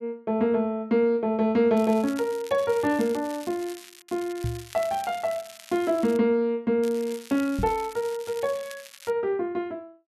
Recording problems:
crackling; from 2 to 4 s, from 4 to 6 s and from 7 to 9 s; loose cable, SNR 19 dB
knock on the microphone; at 4.5 s and at 7.5 s; peak 0 dB vs average level

